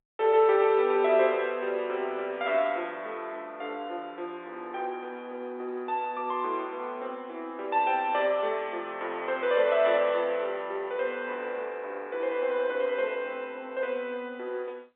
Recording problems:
telephone audio; 300 Hz to 3.7 kHz, G.711

